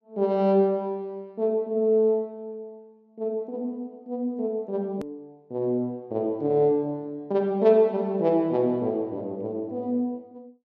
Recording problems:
treble cut off; nothing above 7.2 kHz
click at an edit; at 5 s

